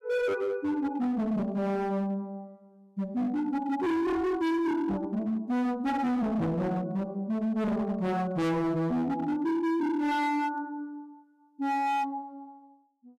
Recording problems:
distortion; hard clipping, signal-to-distortion ratio 6 dB

